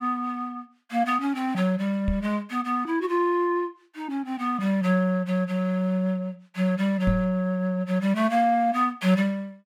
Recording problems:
knock on the microphone; at 2 s and at 7 s; peak +2 dB vs average level

